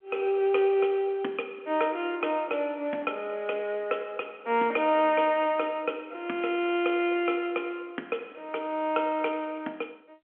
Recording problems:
telephone audio; 260 Hz to 3.3 kHz, G.711

